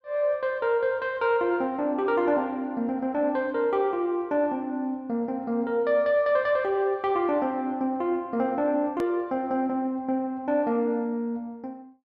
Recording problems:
hard cut with a click; at 9 s

